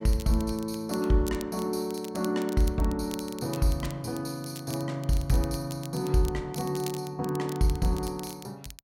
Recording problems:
crackle; vinyl, SNR 16 dB

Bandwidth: 16 kHz